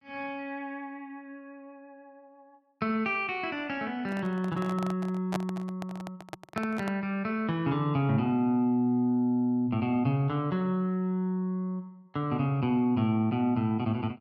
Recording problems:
microphone handling noise; from 4 to 7 s; peak +1 dB vs average level

